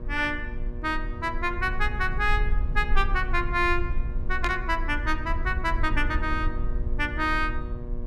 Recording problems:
hum; 60 Hz, harmonics up to 1.2 kHz, SNR 15 dB
rumble; below 48 Hz, strongest tone 22 Hz, SNR 4 dB
static burst; at 4.5 s; peak -2 dB vs average level

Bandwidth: 14.5 kHz